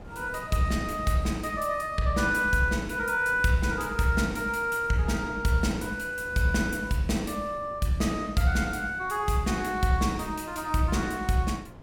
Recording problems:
wind noise; below 400 Hz, SNR 19 dB

